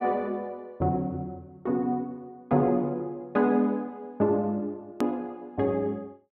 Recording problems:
edit click; at 5 s

